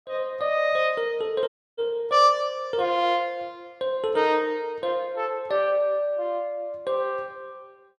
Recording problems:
dropout; at 1.5 s

